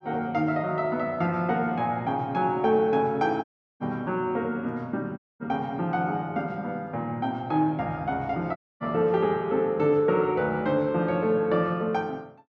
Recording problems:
audio cutting out; at 3.5 s, at 5 s and at 8.5 s

